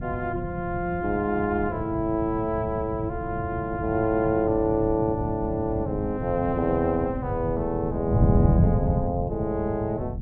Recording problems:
wind on the microphone; below 170 Hz, SNR 3 dB

